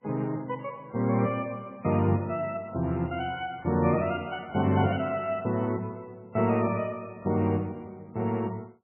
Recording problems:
codec artefacts; MP3, log-spectral distance 3 dB, nothing above 2.5 kHz

